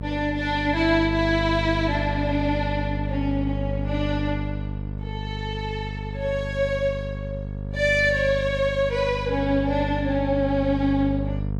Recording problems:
hum; 50 Hz, harmonics up to 500 Hz, SNR 5 dB

